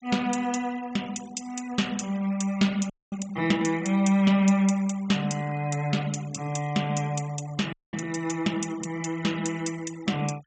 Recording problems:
treble missing; nothing above 8 kHz
noise reduction artefacts; signal-to-artefact ratio 21 dB
audio freezing; at 3 s and at 7.5 s

